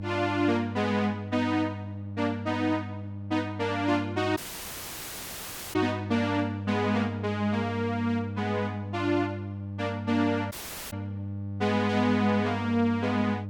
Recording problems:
hum; 50 Hz, harmonics up to 600 Hz, SNR 8 dB
audio cutting out; at 4.5 s for 1.5 s and at 11 s

